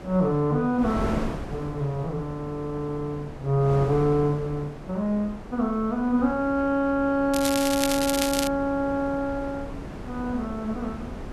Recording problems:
wind on the microphone; below 550 Hz, SNR 11 dB
crackling; from 7.5 to 8.5 s; loose cable, SNR 4 dB

